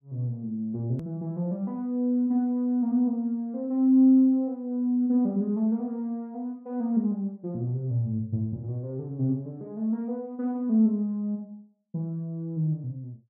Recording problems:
click at an edit; at 1 s

